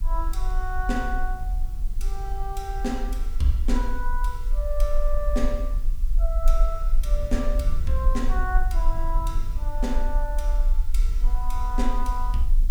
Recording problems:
background hiss; slope +1 dB per octave, SNR 22 dB
rumble; below 38 Hz, strongest tone 22 Hz, SNR -3 dB
wind on the microphone; below 76 Hz, SNR 5 dB

